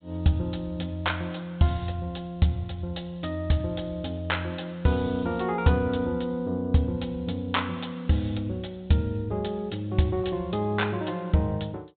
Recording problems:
treble missing; nothing above 4 kHz

